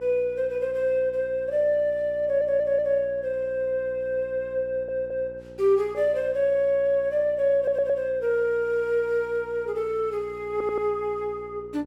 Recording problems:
electrical hum; 60 Hz, harmonics up to 1.4 kHz, SNR 23 dB
stutter; 4 times, first at 2 s

